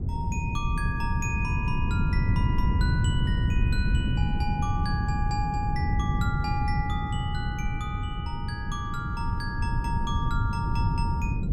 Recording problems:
hum; 50 Hz, harmonics up to 450 Hz, SNR 13 dB
wind on the microphone; below 150 Hz, SNR -6 dB

